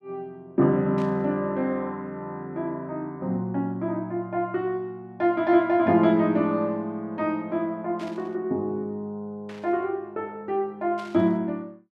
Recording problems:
burst of static; 4 times, first at 1 s; peak -14 dB vs average level

